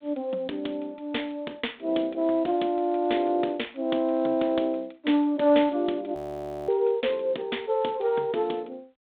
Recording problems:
phone line; 220 Hz to 3.7 kHz, G.726
frozen audio; at 6 s for 0.5 s

